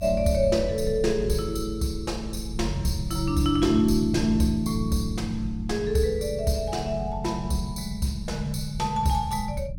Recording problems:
low-frequency rumble; below 110 Hz, SNR 10 dB

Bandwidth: 17 kHz